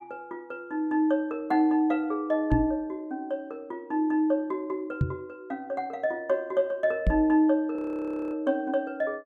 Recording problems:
microphone thump; at 2.5 s, at 5 s and at 7 s; peak +6 dB vs average level
frozen audio; at 8 s for 0.5 s

